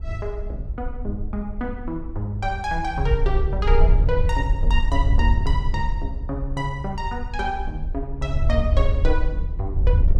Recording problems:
wind on the microphone; below 64 Hz, SNR -3 dB

